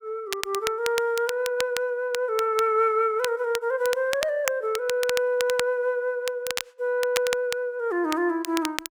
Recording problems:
crackling; vinyl, SNR 9 dB

